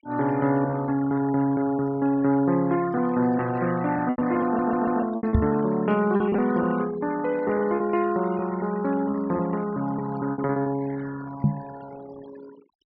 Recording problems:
treble missing; nothing above 5.5 kHz
denoising artefacts; signal-to-artefact ratio 18 dB
packet loss; 6% of the sound replaced, filled with repeated pitch periods
audio stuttering; at 4.5 s
microphone thump; at 5.5 s and at 11 s; peak +7 dB vs average level

